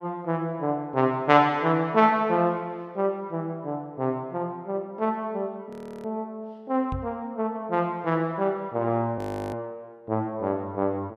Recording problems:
audio freezing; at 5.5 s and at 9 s
microphone thump; at 7 s; peak -3 dB vs average level

